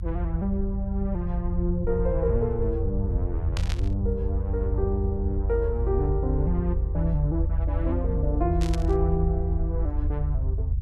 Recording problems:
rumble; below 80 Hz, strongest tone 52 Hz, SNR -1 dB
burst of static; at 3.5 s and at 8.5 s; peak -1 dB vs average level

